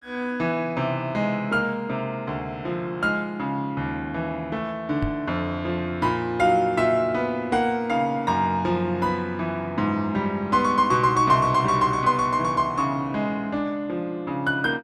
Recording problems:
microphone bump; at 5 s; peak -1 dB vs average level

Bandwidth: 13.5 kHz